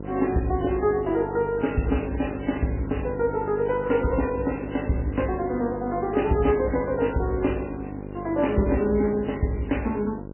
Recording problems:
codec artefacts; MP3, log-spectral distance 6 dB, nothing above 2.7 kHz
electrical hum; 50 Hz, harmonics up to 1.1 kHz, SNR 11 dB

